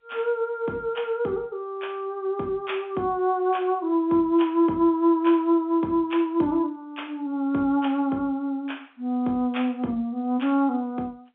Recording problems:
phone line; 150 Hz to 3.6 kHz, G.711

